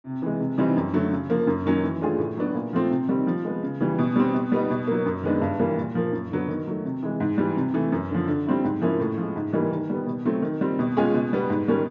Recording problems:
low-pass filter; nothing above 7.2 kHz

